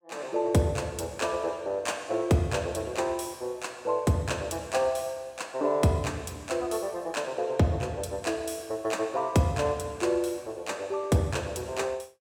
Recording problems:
none

